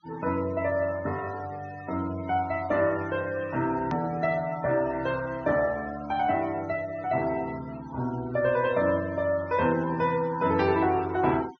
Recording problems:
low-pass filter; nothing above 6.5 kHz
denoising artefacts; signal-to-artefact ratio 18 dB
edit click; at 4 s

